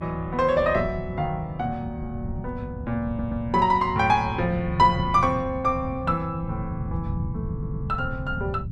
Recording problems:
low-frequency rumble; below 160 Hz, SNR 9 dB
audio stuttering; at 3 s and at 7.5 s

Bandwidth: 12 kHz